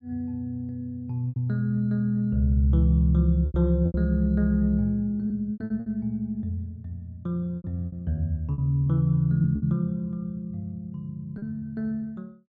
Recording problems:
lost packets; 7% of the sound replaced, filled with repeated pitch periods

